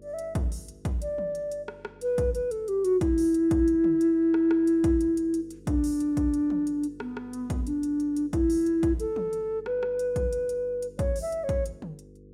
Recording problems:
mains hum; 50 Hz, harmonics up to 500 Hz, SNR 25 dB

